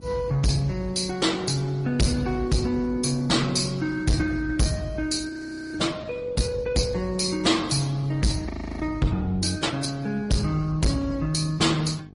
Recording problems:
codec artefacts; Opus, then MP3, log-spectral distance 4 dB, nothing above 10.4 kHz
distorted audio; soft clipping, signal-to-distortion ratio 6 dB
mains hum; 50 Hz, harmonics up to 850 Hz, SNR 21 dB
audio freezing; at 5.5 s and at 8.5 s

